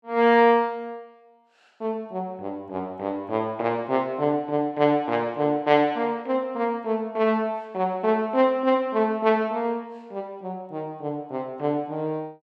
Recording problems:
none

